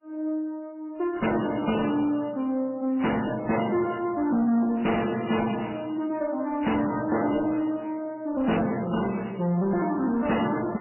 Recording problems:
lossy compression; MP3, then AAC, log-spectral distance 5 dB, nothing above 2.6 kHz
distortion; soft clipping, signal-to-distortion ratio 10 dB

